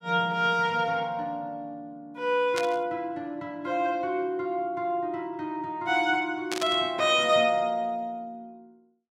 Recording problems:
static burst; at 2.5 s and at 6.5 s; peak -1 dB vs average level

